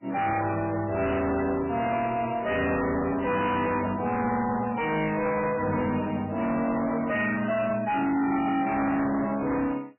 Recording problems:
lossy compression; MP3, log-spectral distance 5 dB, nothing above 2.8 kHz
distortion; hard clipping, uneven, signal-to-distortion ratio 7 dB

